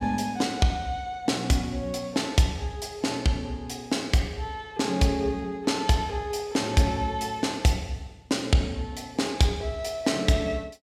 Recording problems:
none

